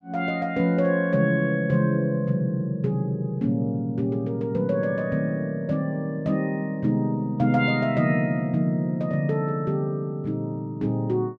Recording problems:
none

